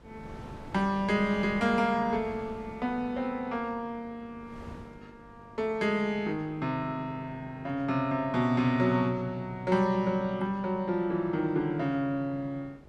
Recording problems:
hum; 50 Hz, harmonics up to 1.1 kHz, SNR 24 dB
wind on the microphone; below 550 Hz, SNR 21 dB

